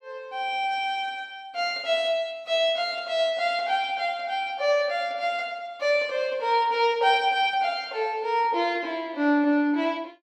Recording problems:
none

